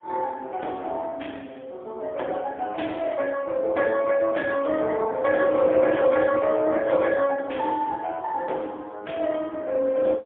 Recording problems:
telephone audio; 280 Hz to 3.5 kHz, AMR-NB, then MP3

